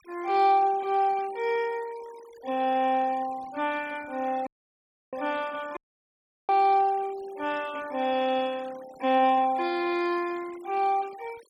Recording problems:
noise reduction artefacts; signal-to-artefact ratio 22 dB
dropout; at 4.5 s for 0.5 s and at 6 s for 0.5 s

